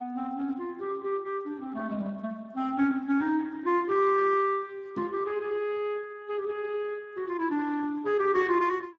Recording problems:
codec artefacts; Speex, log-spectral distance 2 dB
microphone bump; at 5 s; peak -3 dB vs average level

